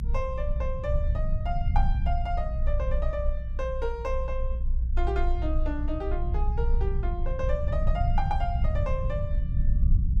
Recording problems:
rumble; below 60 Hz, strongest tone 26 Hz, SNR -5 dB

